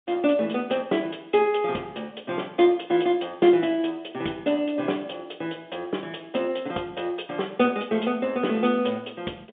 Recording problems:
phone line; 190 Hz to 3.6 kHz, G.711

